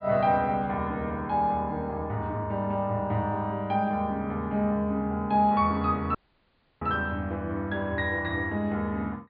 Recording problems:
low-pass filter; nothing above 4.7 kHz
audio cutting out; at 6 s for 0.5 s

